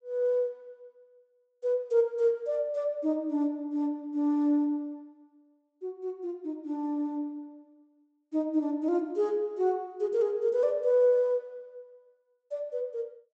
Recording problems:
treble missing; nothing above 8 kHz

